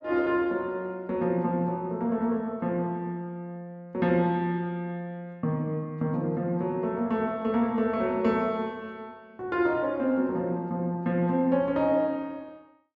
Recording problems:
none

